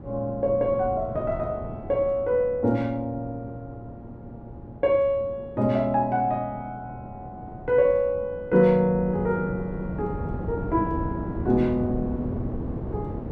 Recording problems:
wind noise; below 330 Hz, SNR 11 dB

